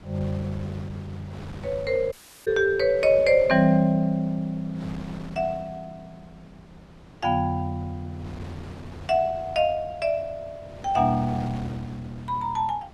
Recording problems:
wind on the microphone; below 710 Hz, SNR 18 dB
dropout; at 2 s

